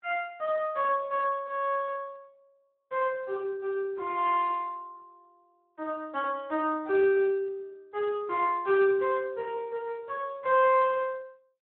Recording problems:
telephone audio; 280 Hz to 3.3 kHz, Speex

